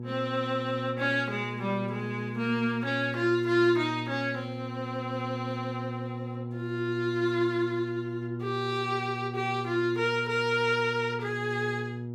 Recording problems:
hum; 60 Hz, harmonics up to 480 Hz, SNR 7 dB

